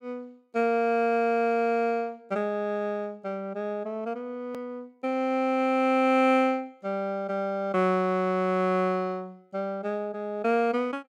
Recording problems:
click at an edit; at 4.5 s

